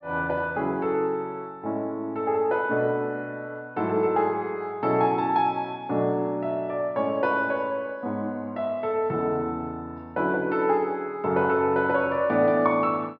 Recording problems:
treble cut off; nothing above 5.5 kHz

